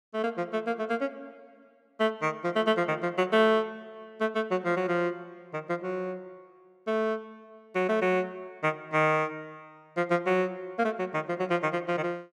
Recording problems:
none

